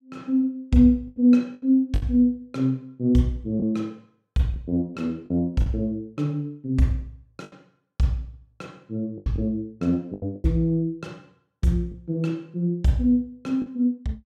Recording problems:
lost packets; 6% of the sound replaced, filled with the last packet

